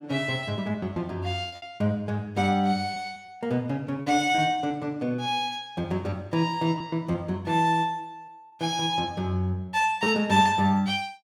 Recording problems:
lost packets; 5% of the sound replaced, filled with repeated pitch periods

